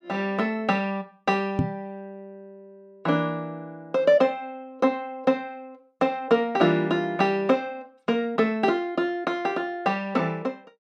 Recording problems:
microphone bump; at 1.5 s; peak +5 dB vs average level

